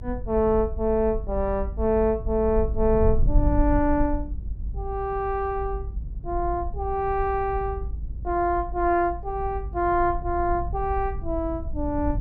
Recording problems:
low-frequency rumble; below 64 Hz, SNR 7 dB

